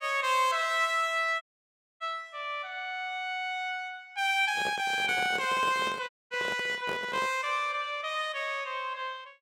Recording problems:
audio cutting out; at 1.5 s for 0.5 s and at 6 s
handling noise; from 4.5 to 7.5 s; peak -5 dB vs average level

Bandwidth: 16.5 kHz